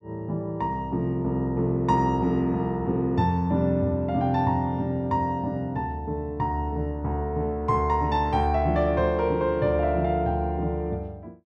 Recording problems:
none

